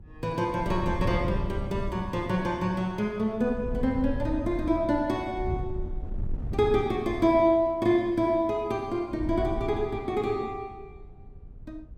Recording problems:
wind noise; below 110 Hz, SNR 9 dB

